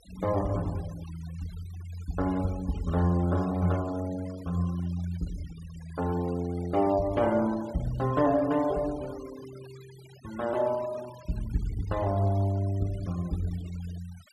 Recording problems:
noise reduction artefacts; signal-to-artefact ratio 20 dB

